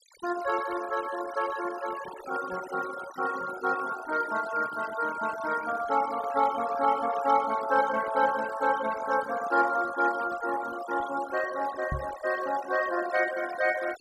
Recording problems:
noise reduction artefacts; signal-to-artefact ratio 13 dB
knock on the microphone; at 12 s; peak -1 dB vs average level

